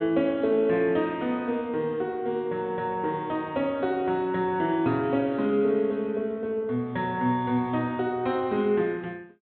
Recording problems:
treble cut off; nothing above 4 kHz

